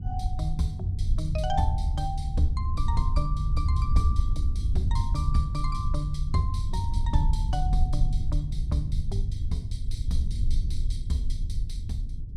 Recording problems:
rumble; below 72 Hz, SNR -2 dB

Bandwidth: 14.5 kHz